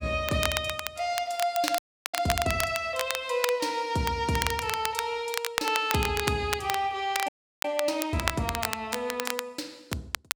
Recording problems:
crackling; vinyl, SNR 4 dB
audio freezing; at 2 s and at 7.5 s

